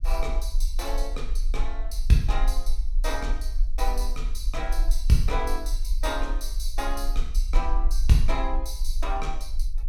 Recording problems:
low-frequency rumble; below 38 Hz, strongest tone 18 Hz, SNR 0 dB

